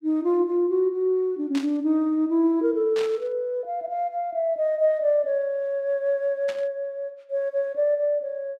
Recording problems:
static burst; at 1.5 s, at 3 s and at 6.5 s; peak -8 dB vs average level

